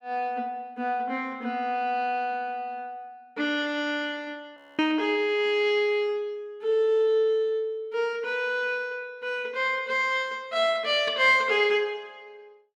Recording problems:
audio freezing; at 4.5 s

